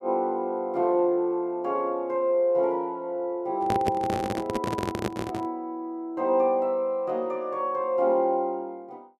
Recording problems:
microphone handling noise; from 3.5 to 5.5 s; peak +3 dB vs average level

